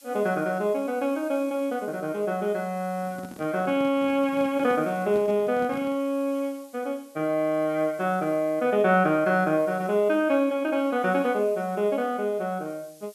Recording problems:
background hiss; SNR 27 dB
handling noise; from 3 to 6 s; peak -8 dB vs average level

